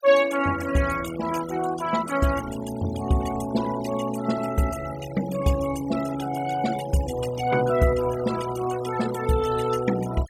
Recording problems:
noise reduction artefacts; signal-to-artefact ratio 12 dB

